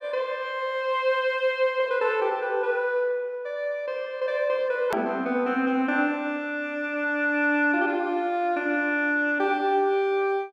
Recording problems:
edit click; at 5 s

